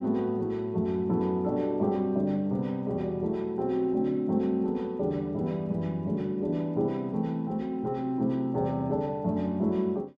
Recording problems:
none

